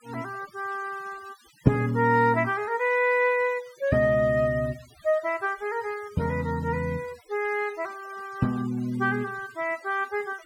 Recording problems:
noise reduction artefacts; signal-to-artefact ratio 24 dB

